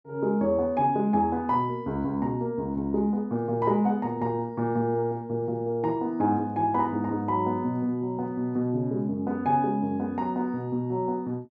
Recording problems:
none

